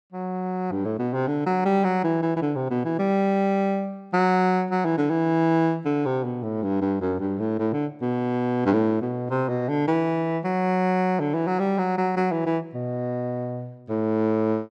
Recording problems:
none

